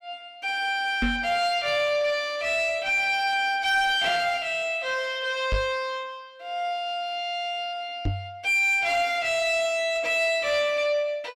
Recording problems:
distortion; soft clipping, signal-to-distortion ratio 11 dB
knock on the microphone; at 1 s, at 5.5 s and at 8 s; peak +2 dB vs average level

